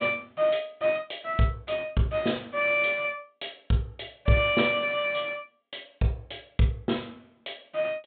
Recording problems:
treble missing; nothing above 4 kHz

